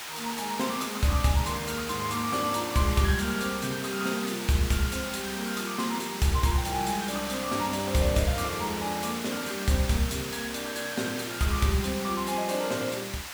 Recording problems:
hiss; SNR 6 dB

